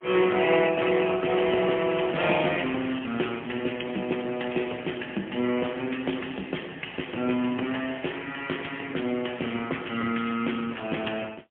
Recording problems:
phone line; 190 Hz to 3.3 kHz, AMR-NB, then MP3

